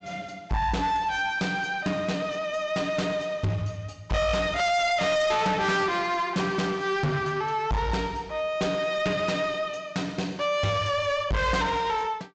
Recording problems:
low-pass filter; nothing above 8 kHz
distorted audio; soft clipping, signal-to-distortion ratio 7 dB

